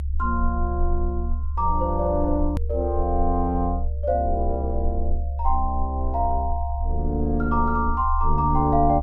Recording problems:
low-frequency rumble; below 70 Hz, SNR 3 dB
hard cut with a click; at 2.5 s

